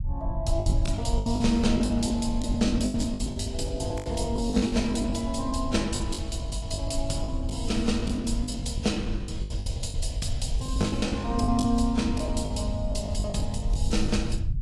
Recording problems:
codec artefacts; AAC, log-spectral distance 2 dB
low-frequency rumble; below 94 Hz, SNR 3 dB
packet loss; 17% of the sound replaced, filled with the last packet

